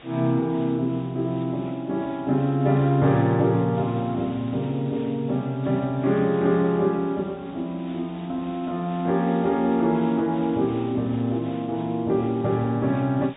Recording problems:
treble missing; nothing above 4 kHz
hiss; SNR 23 dB

